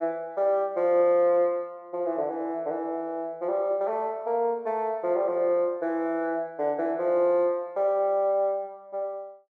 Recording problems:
none

